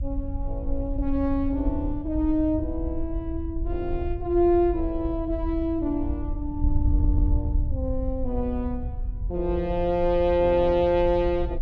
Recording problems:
wind on the microphone; below 74 Hz, SNR 5 dB
audio stuttering; at 7 s

